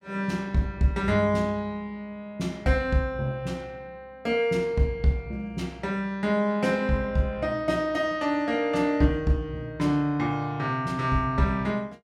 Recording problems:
none

